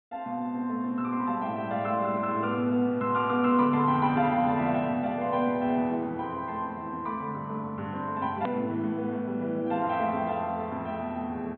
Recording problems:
treble cut off; nothing above 4 kHz
click at an edit; at 8.5 s

